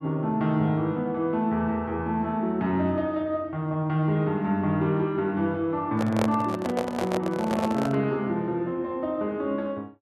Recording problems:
handling noise; from 6 to 8 s; peak +3 dB vs average level

